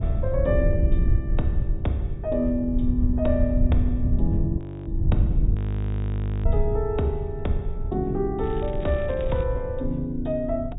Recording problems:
treble cut off; nothing above 4 kHz
low-frequency rumble; below 96 Hz, SNR 0 dB
frozen audio; at 4.5 s and at 5.5 s for 1 s
crackle; from 8.5 to 9.5 s; loose cable, SNR 22 dB

